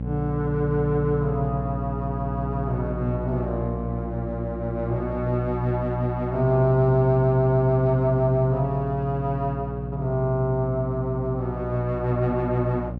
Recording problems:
hum; 60 Hz, harmonics up to 600 Hz, SNR 7 dB

